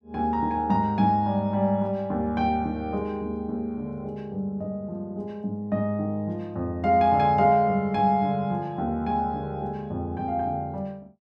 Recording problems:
none

